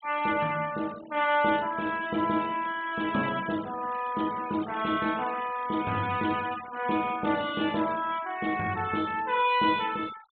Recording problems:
treble cut off; nothing above 4 kHz
noise reduction artefacts; signal-to-artefact ratio 17 dB

